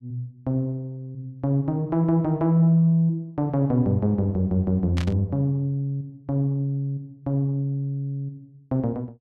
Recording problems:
burst of static; at 5 s; peak -7 dB vs average level

